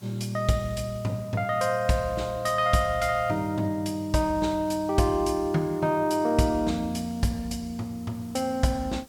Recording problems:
background hiss; SNR 26 dB

